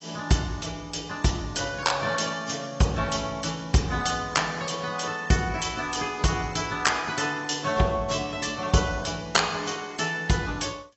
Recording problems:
lossy codec; AAC, log-spectral distance 6 dB, nothing above 7.6 kHz

